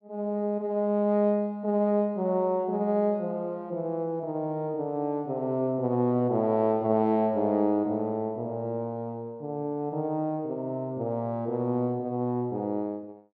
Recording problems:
none

